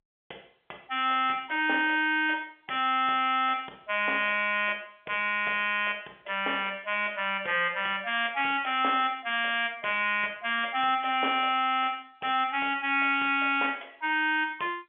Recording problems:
telephone audio; 340 Hz to 3.4 kHz, G.711

